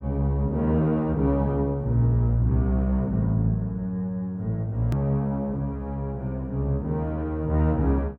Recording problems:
edit click; at 5 s

